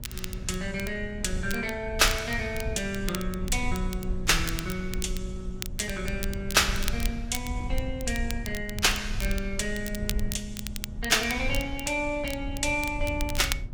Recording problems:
hum; 60 Hz, harmonics up to 600 Hz, SNR 20 dB
rumble; below 72 Hz, SNR 8 dB
crackling; vinyl, SNR 11 dB

